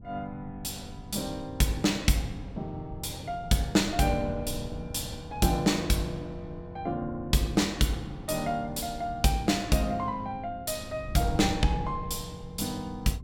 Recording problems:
wind on the microphone; below 150 Hz, SNR 13 dB

